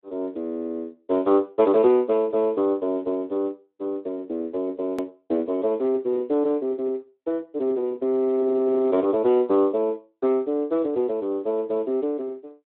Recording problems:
telephone audio; 260 Hz to 4 kHz, Speex
hard cut with a click; at 5 s

